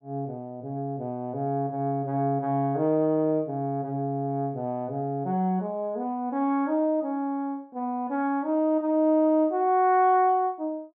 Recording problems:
none

